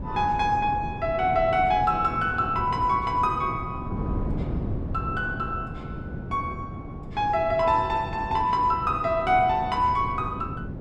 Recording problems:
wind noise; below 250 Hz, SNR 10 dB

